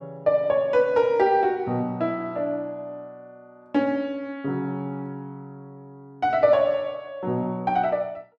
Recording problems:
none

